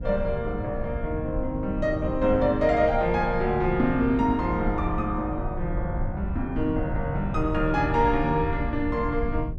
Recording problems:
low-frequency rumble; below 100 Hz, SNR 7 dB

